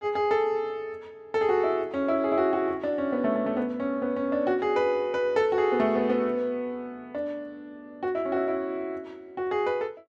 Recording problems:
none

